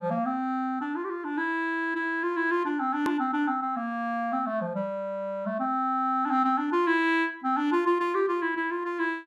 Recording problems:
hard cut with a click; at 3 s

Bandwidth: 14 kHz